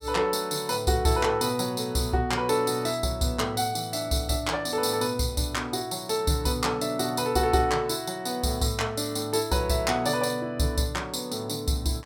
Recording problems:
none

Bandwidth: 17 kHz